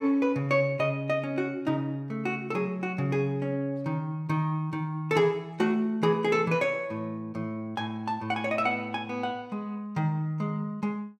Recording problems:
none

